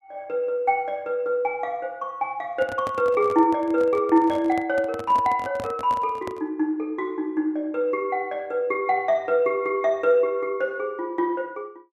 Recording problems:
handling noise; from 2.5 to 6.5 s; peak -7 dB vs average level

